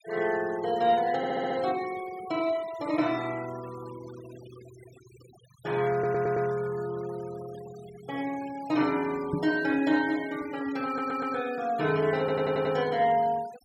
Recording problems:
denoising artefacts; signal-to-artefact ratio 19 dB
stutter; 4 times, first at 1 s
knock on the microphone; at 9.5 s; peak +2 dB vs average level

